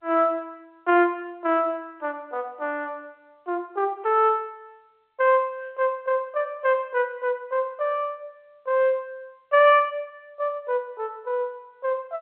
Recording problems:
phone line; 300 Hz to 3.5 kHz, G.711

